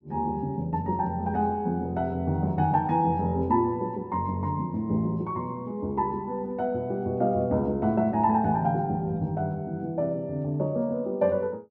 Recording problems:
none

